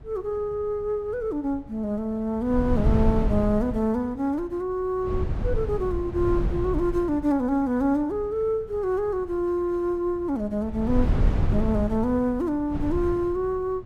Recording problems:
wind on the microphone; below 120 Hz, SNR 4 dB

